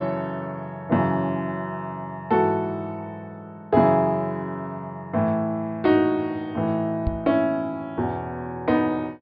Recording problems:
treble missing; nothing above 5.5 kHz
microphone thump; at 7 s; peak +2 dB vs average level

